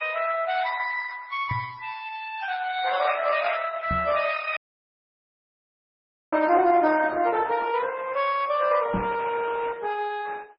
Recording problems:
codec artefacts; Opus, then MP3, log-spectral distance 5 dB, nothing above 5.3 kHz
microphone thump; 4 times, first at 1.5 s; peak 0 dB vs average level
dropout; at 4.5 s for 2 s

